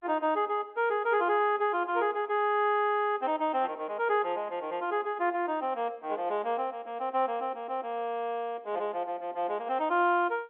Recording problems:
phone line; 260 Hz to 3.7 kHz, G.711

